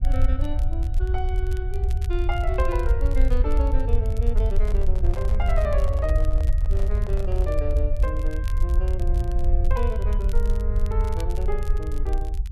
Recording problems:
rumble; below 62 Hz, SNR -7 dB
crackle; vinyl, SNR 19 dB
microphone handling noise; from 4.5 to 7.5 s; peak -6 dB vs average level

